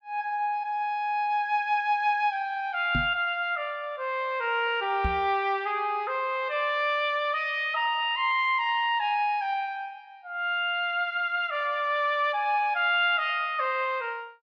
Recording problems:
knock on the microphone; at 3 s and at 5 s; peak 0 dB vs average level

